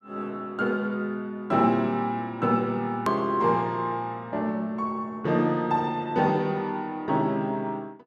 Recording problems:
hard cut with a click; at 3 s

